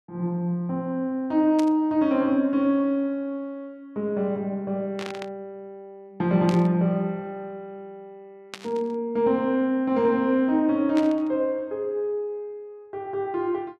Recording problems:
burst of static; 5 times, first at 1.5 s; peak -7 dB vs average level

